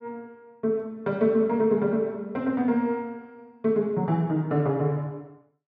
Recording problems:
none

